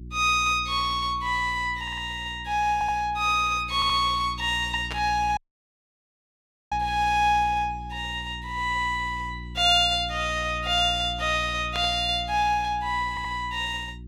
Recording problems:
mains hum; 60 Hz, harmonics up to 360 Hz, SNR 15 dB
stutter; 4 times, first at 2 s
burst of static; at 5 s and at 12 s; peak -6 dB vs average level
audio cutting out; at 5.5 s for 1.5 s

